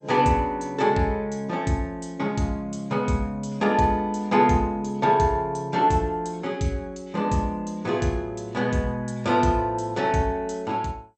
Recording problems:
lossy compression; MP2, log-spectral distance 2 dB, nothing above 8.5 kHz

